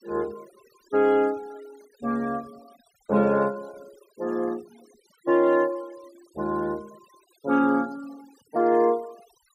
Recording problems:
denoising artefacts; signal-to-artefact ratio 27 dB

